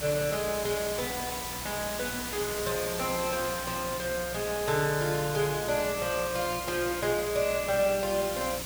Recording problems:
electrical hum; 60 Hz, harmonics up to 300 Hz, SNR 17 dB
hiss; slope -1 dB per octave, SNR 5 dB

